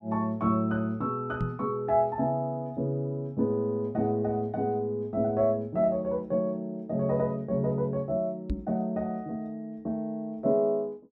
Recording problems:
microphone bump; at 1.5 s and at 8.5 s; peak +2 dB vs average level

